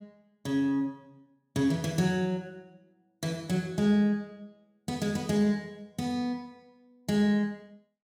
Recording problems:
none

